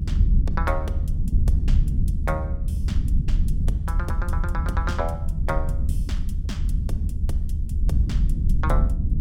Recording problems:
low-frequency rumble; below 78 Hz, SNR -8 dB

